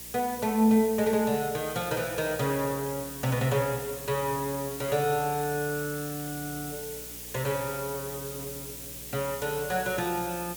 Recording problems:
hum; 60 Hz, harmonics up to 600 Hz, SNR 22 dB
background hiss; SNR 9 dB

